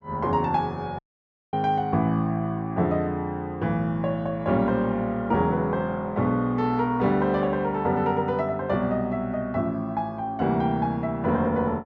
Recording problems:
audio cutting out; at 1 s for 0.5 s

